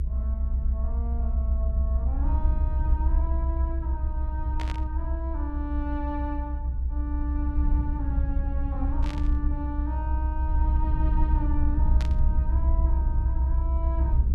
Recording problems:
low-frequency rumble; below 66 Hz, strongest tone 62 Hz, SNR -10 dB
burst of static; at 4.5 s, at 9 s and at 12 s; peak +3 dB vs average level

